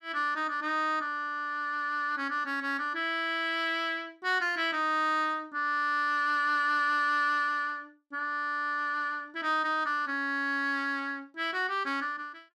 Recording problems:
none

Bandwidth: 14.5 kHz